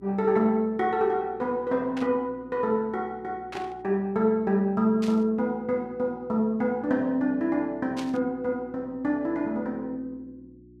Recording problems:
hum; 60 Hz, harmonics up to 360 Hz, SNR 25 dB
burst of static; 4 times, first at 2 s; peak -7 dB vs average level

